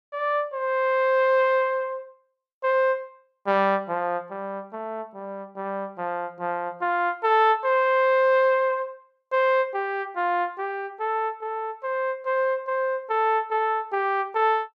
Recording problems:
none

